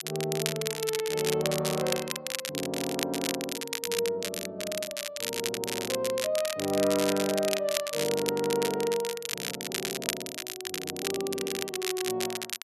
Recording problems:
crackle; vinyl, SNR 2 dB

